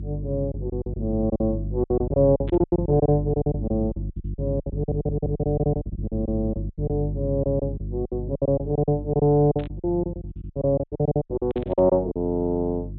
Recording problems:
treble missing; nothing above 4 kHz
hum; 50 Hz, harmonics up to 350 Hz, SNR 8 dB
lost packets; 18% of the sound replaced, filled with silence
burst of static; at 2.5 s, at 9.5 s and at 12 s; peak -15 dB vs average level
stutter; at 5 s

